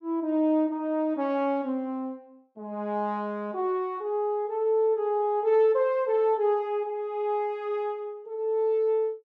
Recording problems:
none

